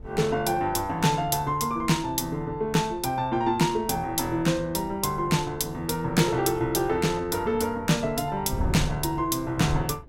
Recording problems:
wind on the microphone; below 140 Hz, SNR 14 dB

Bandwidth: 16 kHz